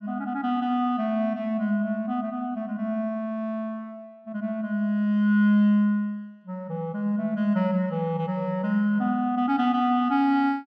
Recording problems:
none

